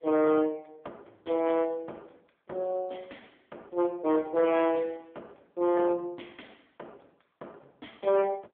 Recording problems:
telephone audio; 300 Hz to 3.4 kHz, AMR-NB
distortion; hard clipping, uneven, signal-to-distortion ratio 11 dB

